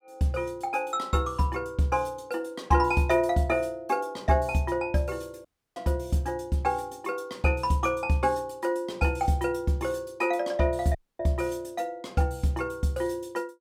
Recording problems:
dropout; at 5.5 s and at 11 s

